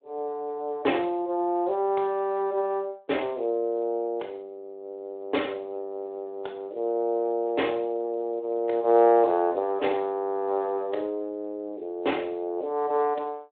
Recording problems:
telephone audio; 300 Hz to 3.7 kHz, Speex

